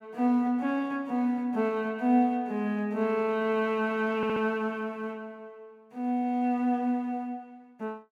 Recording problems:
stutter; at 4 s

